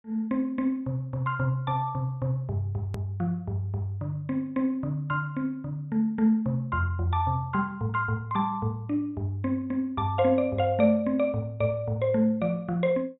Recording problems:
low-pass filter; nothing above 4 kHz
hard cut with a click; at 3 s

